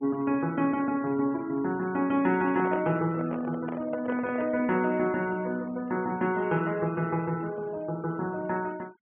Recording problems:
treble missing; nothing above 3.3 kHz
denoising artefacts; signal-to-artefact ratio 24 dB
handling noise; from 2.5 to 4.5 s; peak -3 dB vs average level

